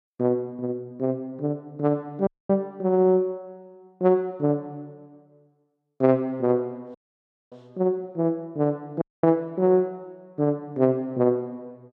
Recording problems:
dropout; at 2.5 s, at 7 s for 0.5 s and at 9 s

